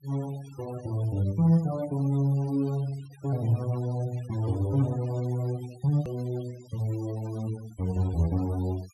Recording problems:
denoising artefacts; signal-to-artefact ratio 22 dB
hard cut with a click; at 6 s

